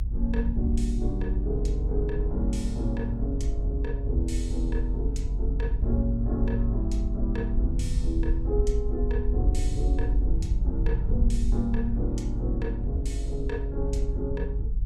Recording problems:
electrical hum; 60 Hz, harmonics up to 480 Hz, SNR 21 dB
low-frequency rumble; below 54 Hz, strongest tone 48 Hz, SNR -2 dB

